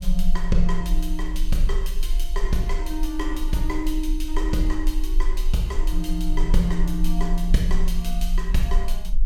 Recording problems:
rumble; below 34 Hz, strongest tone 20 Hz, SNR 0 dB

